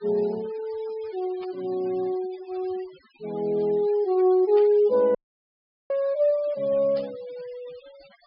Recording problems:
treble cut off; nothing above 5.5 kHz
denoising artefacts; signal-to-artefact ratio 25 dB
static burst; at 1.5 s, at 4.5 s and at 7 s; peak -17 dB vs average level
dropout; at 5 s for 1 s

